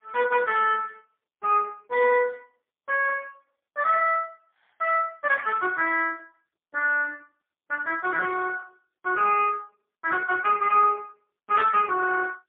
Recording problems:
telephone audio; 320 Hz to 2.9 kHz, AMR-NB, then MP3

